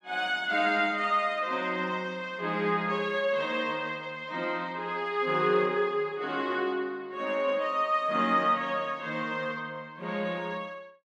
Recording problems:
none

